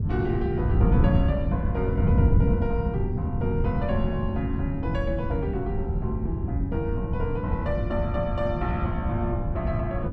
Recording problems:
wind on the microphone; below 160 Hz, SNR -4 dB

